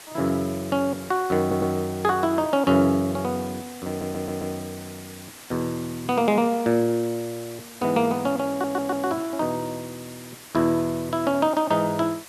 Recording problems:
hiss; slope -1 dB per octave, SNR 17 dB
audio stuttering; at 1.5 s, at 4 s and at 8.5 s

